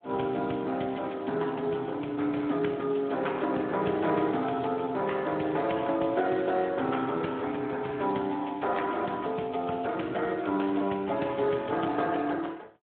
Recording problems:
phone line; 220 Hz to 3.5 kHz, Speex

